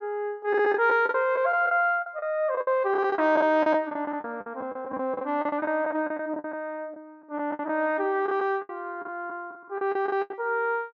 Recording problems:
treble missing; nothing above 6.7 kHz
packet loss; 14% of the sound replaced, filled with the last packet

